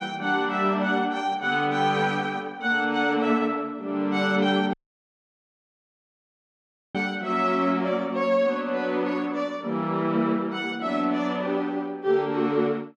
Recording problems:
dropout; at 4.5 s for 2 s

